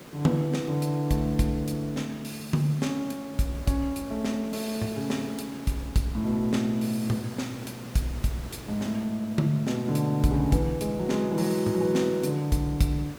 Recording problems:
background hiss; slope -5 dB per octave, SNR 16 dB

